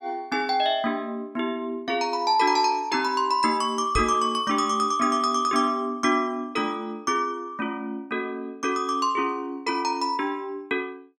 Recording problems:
microphone bump; at 4 s; peak -1 dB vs average level

